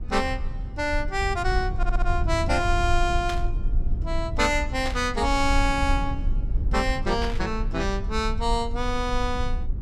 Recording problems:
low-frequency rumble; below 62 Hz, SNR 3 dB
audio stuttering; at 2 s
burst of static; at 3.5 s, at 5 s and at 7 s; peak -4 dB vs average level

